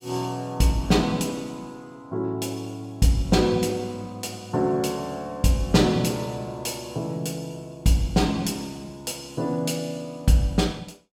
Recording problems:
none

